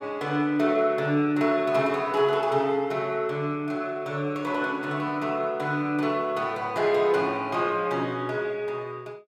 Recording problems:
none

